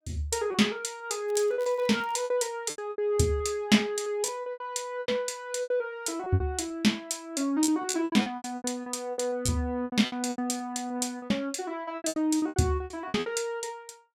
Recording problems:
packet loss; 16% of the sound replaced, filled with repeated pitch periods
crackling; at 1.5 s; loose cable, SNR 26 dB

